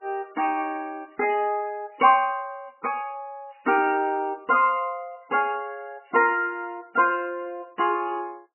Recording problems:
lossy codec; MP3, log-spectral distance 3 dB, nothing above 2.4 kHz

